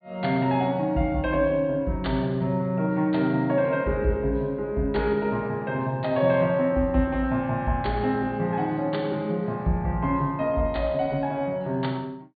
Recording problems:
low-pass filter; nothing above 4.6 kHz

